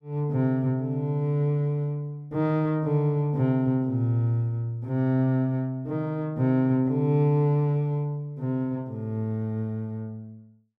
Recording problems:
none

